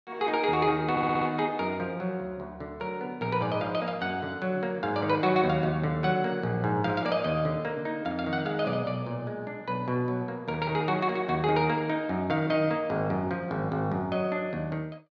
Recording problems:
audio stuttering; at 1 s

